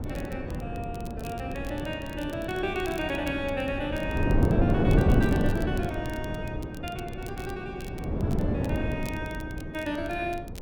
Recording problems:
wind on the microphone; below 330 Hz, SNR -3 dB
crackling; vinyl, SNR 17 dB

